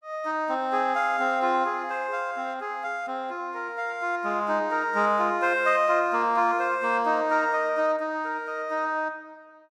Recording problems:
none

